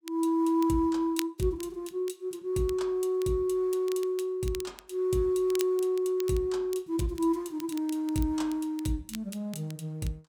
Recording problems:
crackle; vinyl, SNR 18 dB

